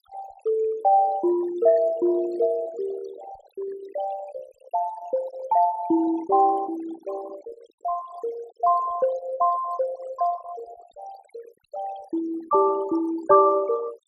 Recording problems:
denoising artefacts; signal-to-artefact ratio 17 dB

